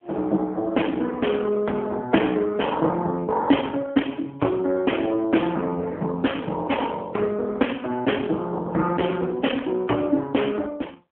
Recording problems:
phone line; 220 Hz to 3.2 kHz, AMR-NB

